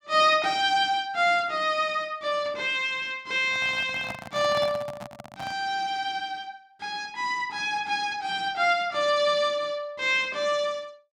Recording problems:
handling noise; from 3.5 to 5.5 s; peak -6 dB vs average level

